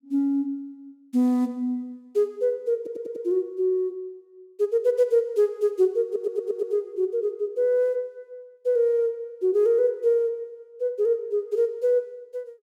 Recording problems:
stutter; at 3 s and at 6 s

